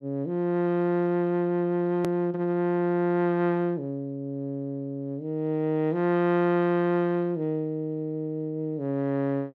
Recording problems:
click at an edit; at 2 s

